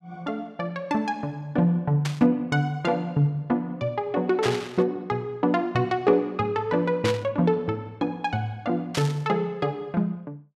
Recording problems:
static burst; 4 times, first at 2 s; peak 0 dB vs average level

